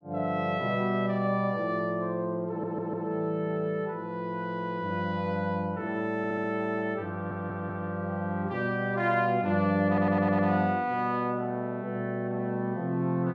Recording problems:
stutter; 4 times, first at 2.5 s

